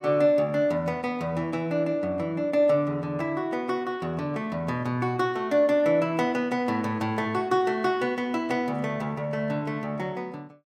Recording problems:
none

